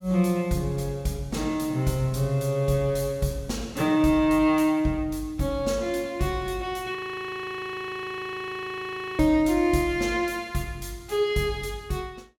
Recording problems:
frozen audio; at 7 s for 2 s

